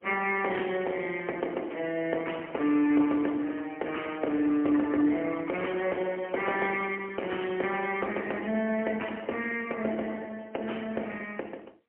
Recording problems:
telephone audio; 240 Hz to 3.1 kHz, AMR-NB, then MP3

